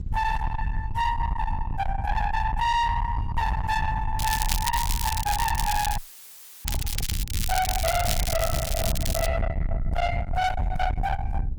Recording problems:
lossy codec; Opus, log-spectral distance 2 dB, nothing above 20.1 kHz
distorted audio; soft clipping, signal-to-distortion ratio 7 dB
wind on the microphone; below 700 Hz, SNR 3 dB
crackle; from 4 to 6 s and from 6.5 to 9.5 s; loose cable, SNR 5 dB
dropout; at 6 s for 0.5 s; filled with static

